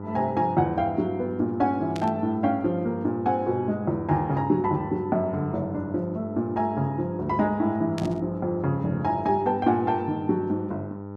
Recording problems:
hum; 50 Hz, harmonics up to 1.4 kHz, SNR 11 dB
burst of static; at 2 s and at 8 s; peak -7 dB vs average level

